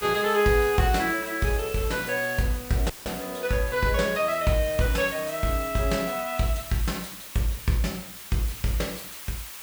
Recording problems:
background hiss; slope +1 dB per octave, SNR 12 dB
audio cutting out; at 3 s

